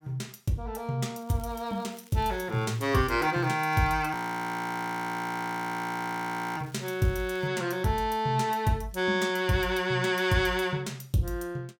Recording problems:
crackle; from 1 to 7.5 s; loose cable, SNR 24 dB
frozen audio; at 4 s for 2.5 s

